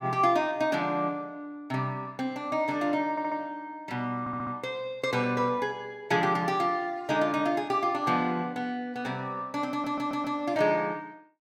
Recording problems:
audio stuttering; at 3 s, at 4 s and at 9.5 s

